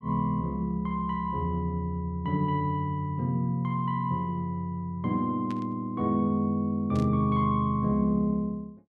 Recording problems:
burst of static; at 5.5 s and at 7 s; peak -13 dB vs average level

